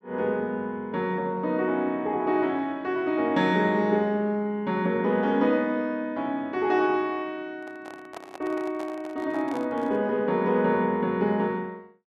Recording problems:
microphone handling noise; from 7.5 to 10 s; peak -9 dB vs average level

